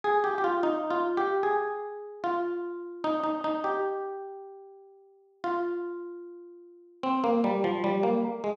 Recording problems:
none

